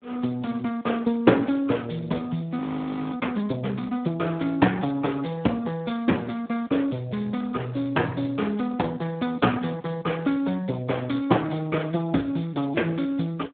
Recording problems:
phone line; 170 Hz to 3.5 kHz, Speex
audio freezing; at 2.5 s for 0.5 s

